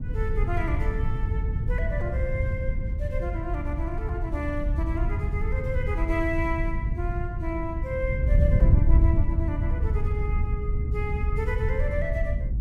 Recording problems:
wind noise; below 92 Hz, SNR -6 dB

